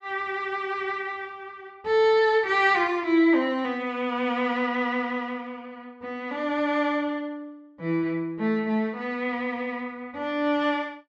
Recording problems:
treble cut off; nothing above 8 kHz

